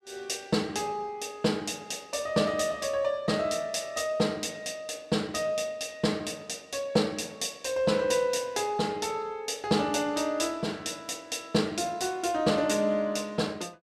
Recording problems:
none

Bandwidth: 14.5 kHz